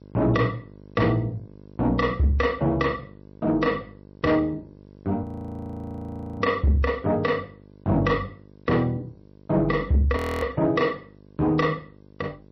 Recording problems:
codec artefacts; G.722, then MP3, log-spectral distance 2 dB, nothing above 15.6 kHz
distortion; soft clipping, signal-to-distortion ratio 12 dB
electrical hum; 50 Hz, harmonics up to 1.1 kHz, SNR 24 dB
audio freezing; at 5 s for 1 s and at 10 s

